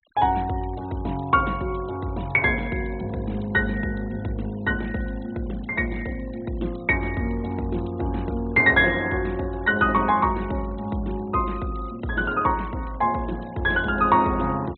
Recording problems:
treble missing; nothing above 4 kHz
denoising artefacts; signal-to-artefact ratio 26 dB

